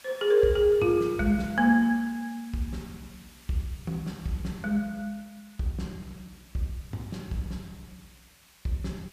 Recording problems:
background hiss; slope +1 dB per octave, SNR 25 dB

